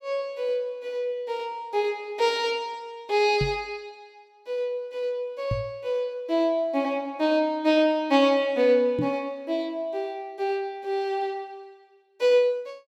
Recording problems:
microphone bump; at 3.5 s, at 5.5 s and at 9 s; peak +2 dB vs average level

